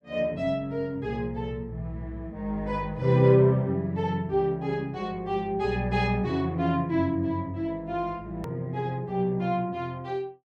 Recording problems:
click at an edit; at 8.5 s

